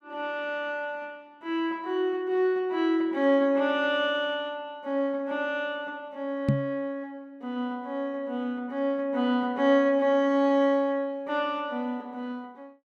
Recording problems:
microphone bump; at 6.5 s; peak +7 dB vs average level

